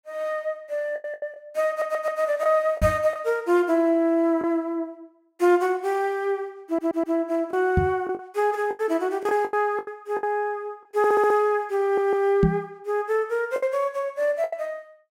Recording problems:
packet loss; 7% of the sound replaced, filled with the last packet
audio stuttering; 4 times, first at 1.5 s
microphone thump; at 3 s, at 8 s and at 12 s; peak +6 dB vs average level

